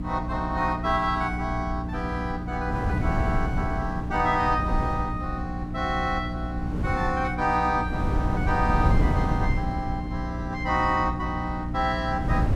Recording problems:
hum; 60 Hz, harmonics up to 300 Hz, SNR 5 dB
wind on the microphone; below 150 Hz, SNR 4 dB

